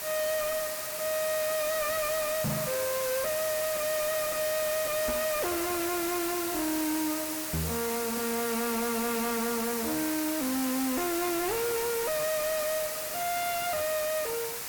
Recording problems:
distortion; soft clipping, signal-to-distortion ratio 7 dB
hiss; slope 0 dB per octave, SNR 2 dB
microphone bump; at 2.5 s, at 5 s and at 7.5 s; peak +6 dB vs average level
crackle; from 4.5 to 7 s and at 8 s; loose cable, SNR 17 dB

